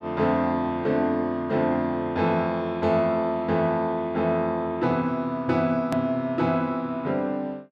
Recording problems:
edit click; at 6 s

